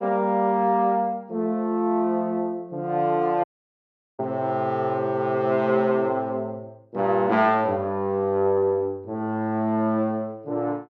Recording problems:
audio cutting out; at 3.5 s for 1 s

